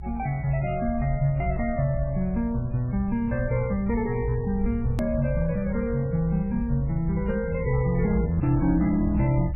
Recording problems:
lossy codec; MP3, log-spectral distance 2 dB, nothing above 13.1 kHz
low-frequency rumble; below 78 Hz, strongest tone 60 Hz, SNR 8 dB
click at an edit; at 5 s

